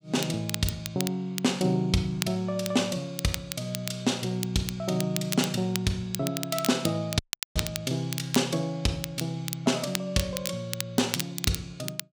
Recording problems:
crackling; vinyl, SNR 7 dB
audio cutting out; at 7 s

